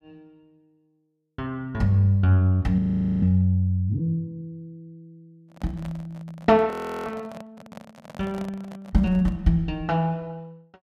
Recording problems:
audio freezing; at 3 s and at 6.5 s
handling noise; from 5.5 to 9.5 s; peak -11 dB vs average level

